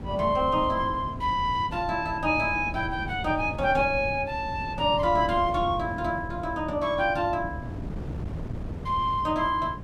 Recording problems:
wind on the microphone; below 230 Hz, SNR 11 dB

